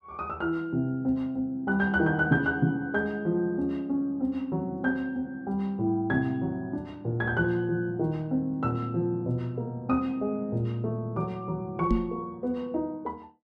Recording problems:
microphone thump; at 12 s; peak +6 dB vs average level

